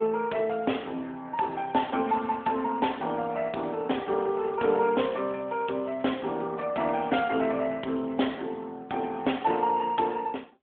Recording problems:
telephone audio; 220 Hz to 3.4 kHz, AMR-NB
crackle; from 4.5 to 6 s; loose cable, SNR 29 dB

